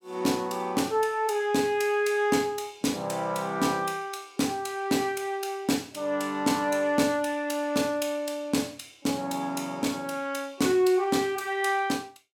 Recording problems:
none

